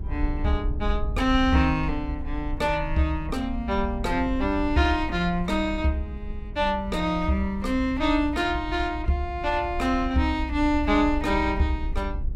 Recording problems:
rumble; below 64 Hz, SNR 8 dB

